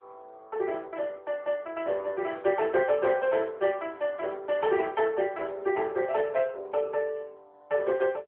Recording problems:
phone line; 340 Hz to 3 kHz, AMR-NB

